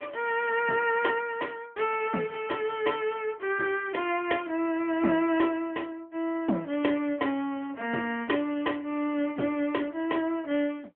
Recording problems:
telephone audio; 190 Hz to 3.3 kHz, AMR-NB

